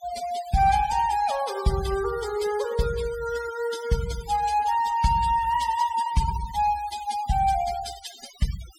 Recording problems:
denoising artefacts; signal-to-artefact ratio 14 dB

